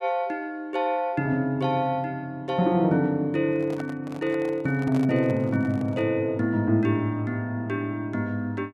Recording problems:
handling noise; from 3.5 to 6 s; peak -7 dB vs average level

